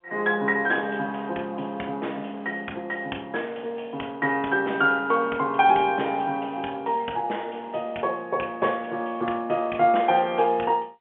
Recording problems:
phone line; 260 Hz to 3.3 kHz, G.711

